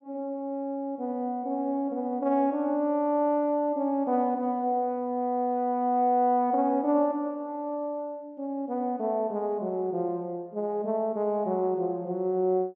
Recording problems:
none

